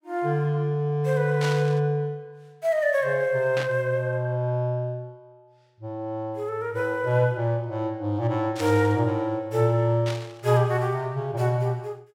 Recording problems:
burst of static; 4 times, first at 1.5 s; peak -4 dB vs average level

